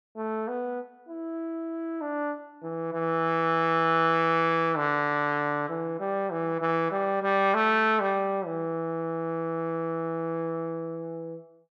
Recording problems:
none

